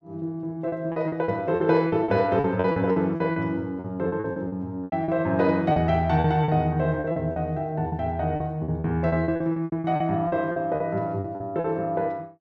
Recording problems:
packet loss; 15% of the sound replaced, filled with repeated pitch periods

